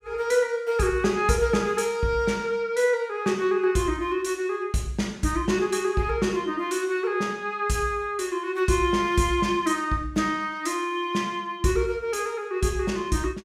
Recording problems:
none

